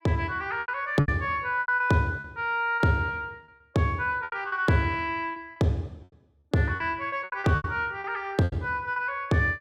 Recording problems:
packet loss; 12% of the sound replaced, filled with repeated pitch periods

